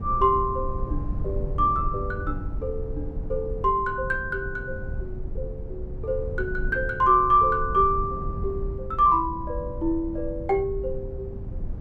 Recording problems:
low-frequency rumble; below 100 Hz, SNR 9 dB

